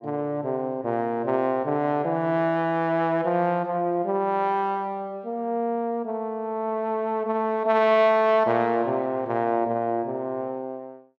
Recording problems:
none

